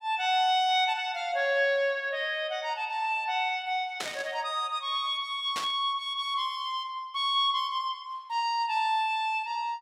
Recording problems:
static burst; at 4 s and at 5.5 s; peak -1 dB vs average level

